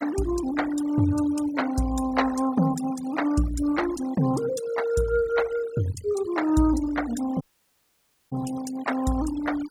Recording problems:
noise reduction artefacts; signal-to-artefact ratio 15 dB
audio cutting out; at 7.5 s for 1 s

